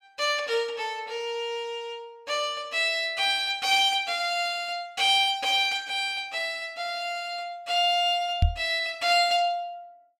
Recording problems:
microphone bump; at 8.5 s; peak +6 dB vs average level

